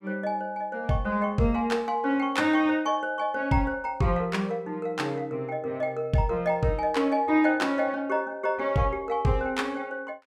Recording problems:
none

